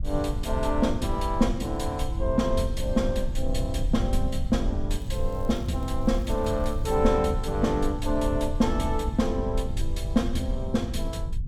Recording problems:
low-frequency rumble; below 76 Hz, SNR 4 dB
crackle; from 5 to 7 s; loose cable, SNR 29 dB

